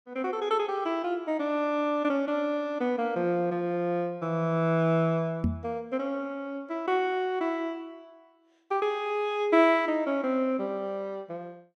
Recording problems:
knock on the microphone; at 5.5 s; peak +4 dB vs average level

